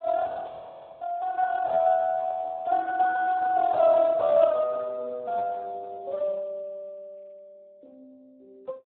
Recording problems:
telephone audio; 340 Hz to 2.2 kHz, Speex

